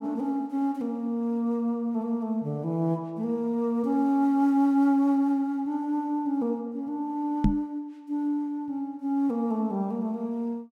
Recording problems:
microphone thump; at 7.5 s; peak +8 dB vs average level

